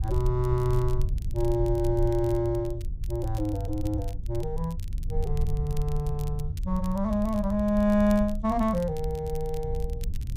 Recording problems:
low-frequency rumble; below 70 Hz, SNR 6 dB
crackling; vinyl, SNR 23 dB

